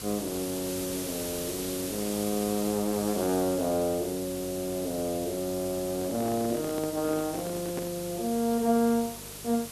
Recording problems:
hum; 50 Hz, harmonics up to 550 Hz, SNR 21 dB
hiss; SNR 8 dB
handling noise; from 6 to 8 s; peak -3 dB vs average level

